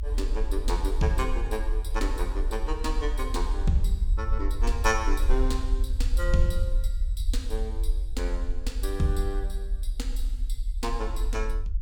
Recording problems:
rumble; below 44 Hz, strongest tone 30 Hz, SNR -2 dB

